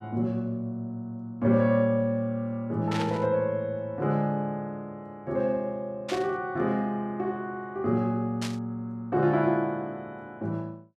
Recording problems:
static burst; at 3 s, at 6 s and at 8.5 s; peak -3 dB vs average level

